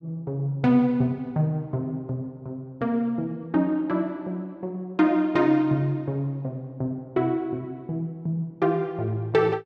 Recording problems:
none

